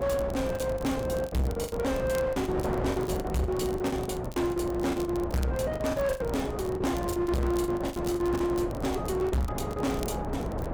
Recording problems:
distortion; hard clipping, uneven, signal-to-distortion ratio 7 dB
electrical hum; 60 Hz, harmonics up to 540 Hz, SNR 13 dB
wind on the microphone; below 660 Hz, SNR 5 dB
crackling; vinyl, SNR 20 dB
packet loss; 14% of the sound replaced, filled with the last packet

